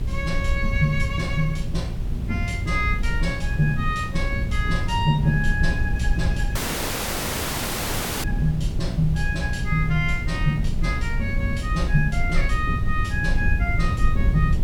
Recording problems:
hum; 60 Hz, harmonics up to 600 Hz, SNR 8 dB
background hiss; slope -2 dB per octave, SNR 23 dB
low-frequency rumble; below 74 Hz, SNR 2 dB
wind noise; below 230 Hz, SNR 16 dB
audio cutting out; at 6.5 s for 1.5 s

